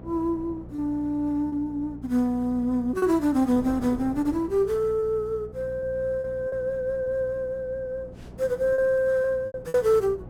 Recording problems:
mains hum; 60 Hz, harmonics up to 540 Hz, SNR 19 dB
wind on the microphone; below 450 Hz, SNR 20 dB
lost packets; 5% of the sound replaced, filled with repeated pitch periods

